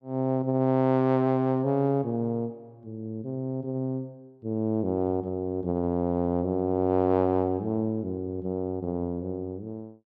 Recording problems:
none

